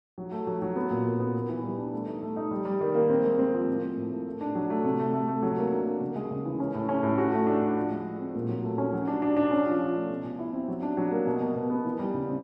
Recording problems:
none

